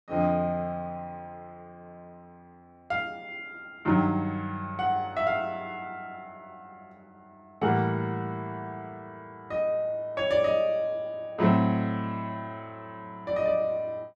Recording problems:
none

